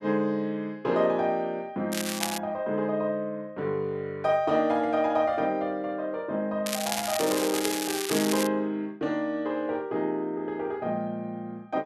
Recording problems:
crackling; at 2 s and from 6.5 to 8.5 s; loose cable, SNR 4 dB

